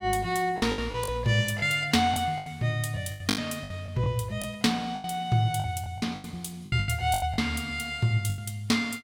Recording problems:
packet loss; 13% of the sound replaced, filled with the last packet

